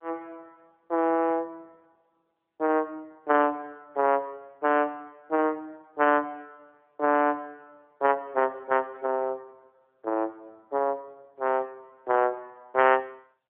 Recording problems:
telephone audio; 280 Hz to 3.2 kHz, AMR-NB

